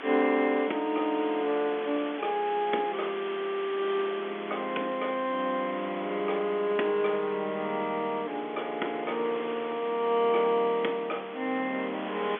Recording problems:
phone line; 240 Hz to 3.5 kHz, G.711
hiss; SNR 13 dB

